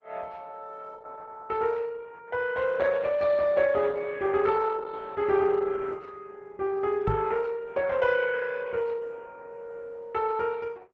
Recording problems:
codec artefacts; Opus, log-spectral distance 3 dB
knock on the microphone; at 7 s; peak +1 dB vs average level

